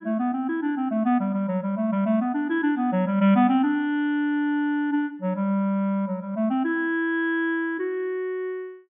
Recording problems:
treble cut off; nothing above 3.6 kHz

